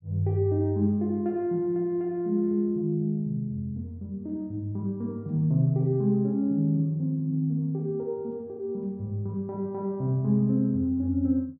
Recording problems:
none

